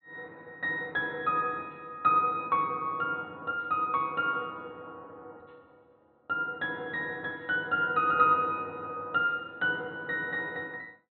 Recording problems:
treble cut off; nothing above 4.2 kHz

